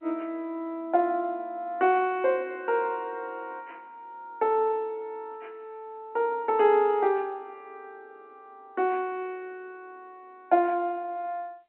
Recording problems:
phone line; 240 Hz to 3.4 kHz, G.711

